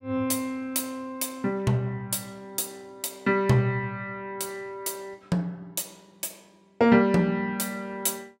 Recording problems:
none

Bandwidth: 16 kHz